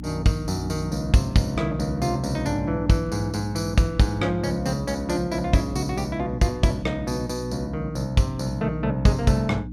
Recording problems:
electrical hum; 60 Hz, harmonics up to 300 Hz, SNR 10 dB

